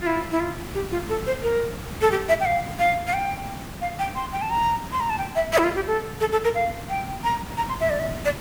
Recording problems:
background hiss; slope -4 dB per octave, SNR 11 dB

